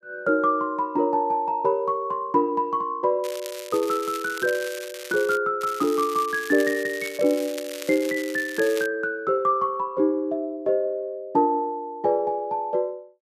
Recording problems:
crackle; from 3 to 5.5 s and from 5.5 to 9 s; loose cable, SNR 14 dB

